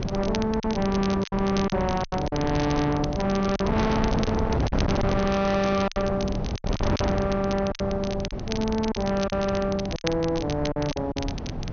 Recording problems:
treble missing; nothing above 6.4 kHz
distorted audio; soft clipping, signal-to-distortion ratio 6 dB
wind on the microphone; below 440 Hz, SNR 4 dB
crackle; vinyl, SNR 13 dB
packet loss; 9% of the sound replaced, filled with silence

